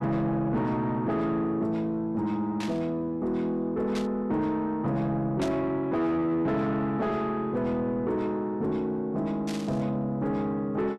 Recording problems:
distortion; soft clipping, signal-to-distortion ratio 10 dB
static burst; 4 times, first at 2.5 s; peak -6 dB vs average level

